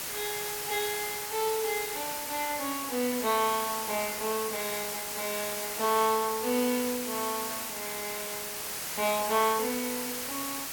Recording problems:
background hiss; slope 0 dB per octave, SNR 2 dB

